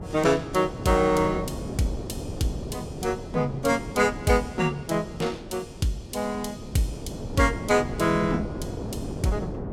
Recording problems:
wind noise; below 420 Hz, SNR 10 dB

